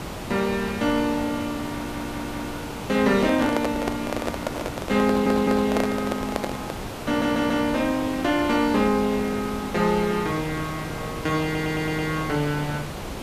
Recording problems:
background hiss; slope -5 dB per octave, SNR 9 dB
audio stuttering; 4 times, first at 1.5 s
microphone handling noise; from 3 to 7 s; peak +2 dB vs average level

